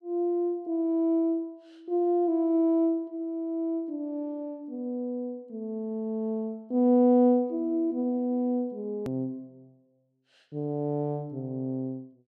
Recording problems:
click at an edit; at 9 s

